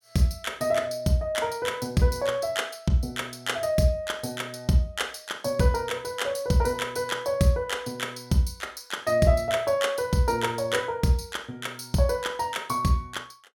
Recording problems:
none

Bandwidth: 17.5 kHz